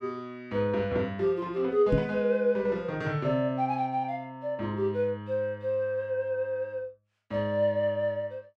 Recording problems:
knock on the microphone; at 2 s; peak +5 dB vs average level

